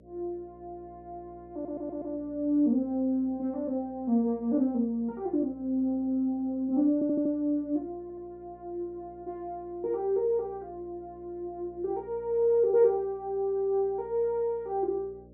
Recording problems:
electrical hum; 60 Hz, harmonics up to 600 Hz, SNR 25 dB
stutter; at 1.5 s, at 7 s and at 8 s

